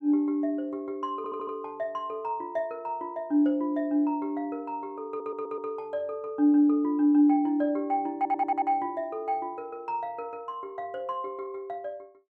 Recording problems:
audio stuttering; at 1 s, at 5 s and at 8 s

